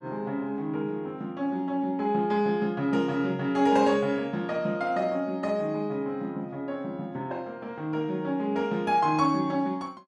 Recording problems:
none

